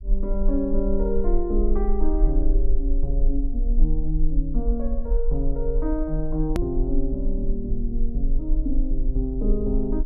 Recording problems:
rumble; below 38 Hz, strongest tone 20 Hz, SNR -1 dB
edit click; at 6.5 s

